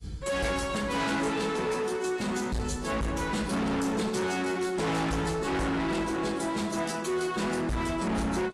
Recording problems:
codec artefacts; AAC, log-spectral distance 4 dB, nothing above 11 kHz
distortion; hard clipping, signal-to-distortion ratio 6 dB

